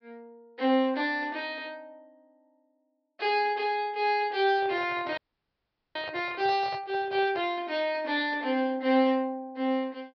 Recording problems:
treble missing; nothing above 5.5 kHz
handling noise; from 4.5 to 7.5 s; peak -10 dB vs average level
frozen audio; at 5 s for 1 s

